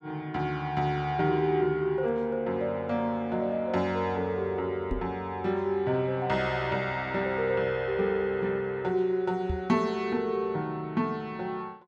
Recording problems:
knock on the microphone; at 5 s and at 9.5 s; peak 0 dB vs average level

